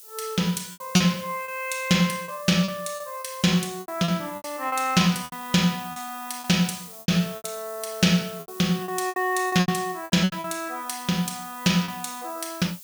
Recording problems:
hiss; SNR 16 dB
lost packets; 11% of the sound replaced, filled with repeated pitch periods

